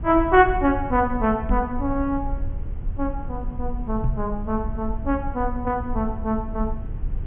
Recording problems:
low-pass filter; nothing above 3.3 kHz
rumble; below 70 Hz, SNR 8 dB
knock on the microphone; at 1.5 s and at 4 s; peak +3 dB vs average level

